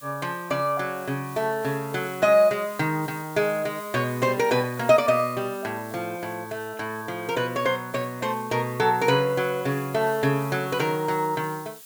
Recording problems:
background hiss; slope +2 dB per octave, SNR 19 dB

